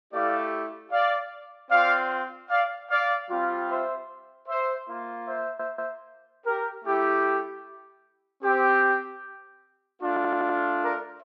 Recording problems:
stutter; at 5.5 s and at 10 s

